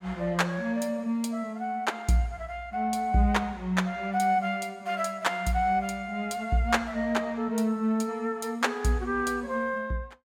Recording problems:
none

